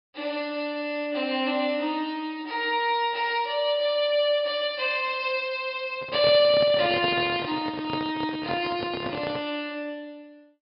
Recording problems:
treble cut off; nothing above 5.5 kHz
microphone handling noise; from 6 to 9.5 s; peak -2 dB vs average level

